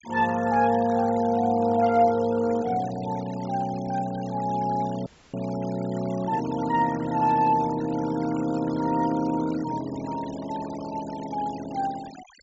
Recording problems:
low-pass filter; nothing above 8 kHz
noise reduction artefacts; signal-to-artefact ratio 18 dB
audio cutting out; at 5 s

